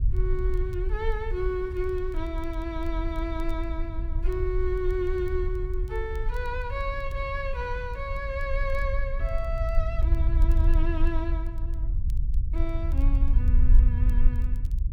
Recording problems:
low-frequency rumble; below 56 Hz, SNR -4 dB
crackle; vinyl, SNR 30 dB

